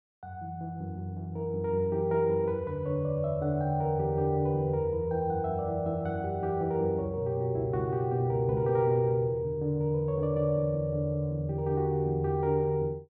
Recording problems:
none

